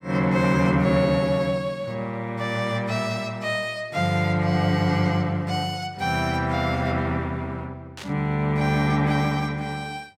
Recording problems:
static burst; at 8 s; peak -10 dB vs average level

